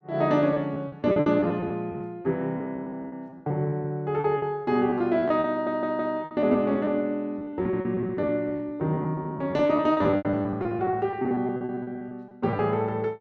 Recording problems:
lost packets; 17% of the sound replaced, filled with repeated pitch periods
audio stuttering; at 5.5 s

